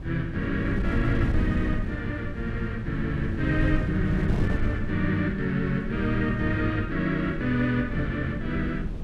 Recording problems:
wind on the microphone; below 150 Hz, SNR 4 dB

